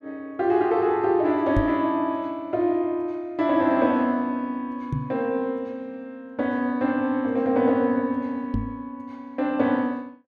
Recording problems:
microphone bump; at 1.5 s, at 5 s and at 8.5 s; peak +2 dB vs average level

